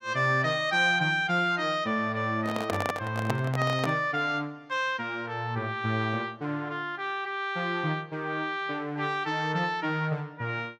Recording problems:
microphone handling noise; from 2.5 to 4 s; peak +2 dB vs average level

